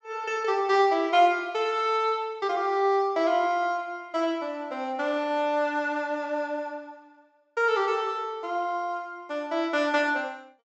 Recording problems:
low-pass filter; nothing above 8 kHz

